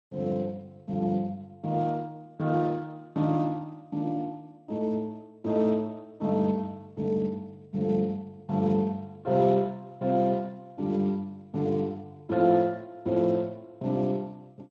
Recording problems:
lossy compression; Speex, then MP2, log-spectral distance 2 dB

